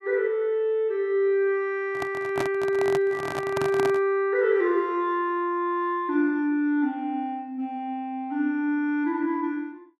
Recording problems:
microphone handling noise; from 2 to 4 s; peak 0 dB vs average level

